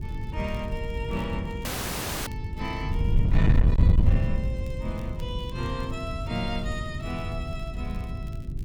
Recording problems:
distortion; hard clipping, signal-to-distortion ratio 7 dB
hum; 50 Hz, harmonics up to 400 Hz, SNR 8 dB
wind on the microphone; below 120 Hz, SNR -6 dB
crackling; vinyl, SNR 24 dB
dropout; at 1.5 s for 0.5 s

